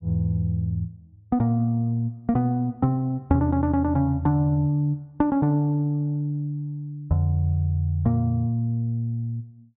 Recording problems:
low-pass filter; nothing above 4 kHz

